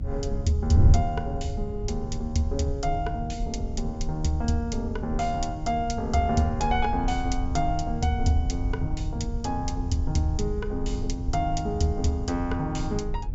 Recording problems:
treble cut off; nothing above 8 kHz
electrical hum; 50 Hz, harmonics up to 450 Hz, SNR 19 dB
rumble; below 64 Hz, SNR 8 dB
wind noise; below 100 Hz, SNR 4 dB

